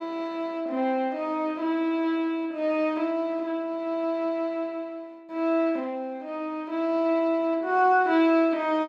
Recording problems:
none

